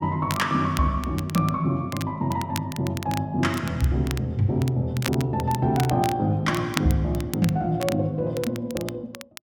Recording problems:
crackle; vinyl, SNR 13 dB

